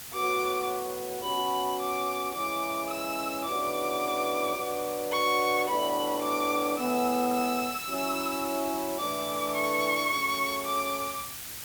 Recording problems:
background hiss; slope +1 dB per octave, SNR 9 dB

